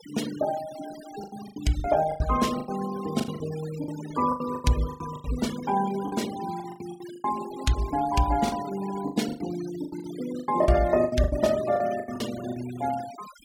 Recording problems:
noise reduction artefacts; signal-to-artefact ratio 16 dB
packet loss; 15% of the sound replaced, filled with the last packet

